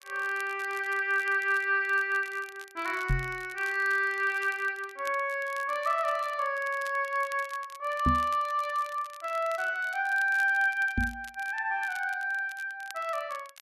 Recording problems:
crackling; vinyl, SNR 21 dB
microphone thump; at 3 s, at 8 s and at 11 s; peak +5 dB vs average level

